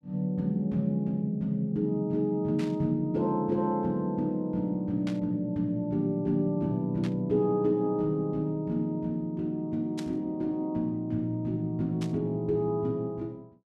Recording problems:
burst of static; 5 times, first at 2.5 s; peak -8 dB vs average level

